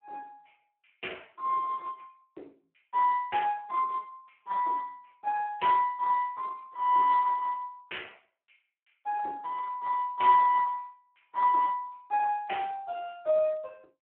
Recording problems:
phone line; 280 Hz to 2.8 kHz, Speex

